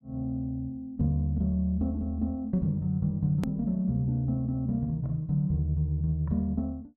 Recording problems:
click at an edit; at 3.5 s

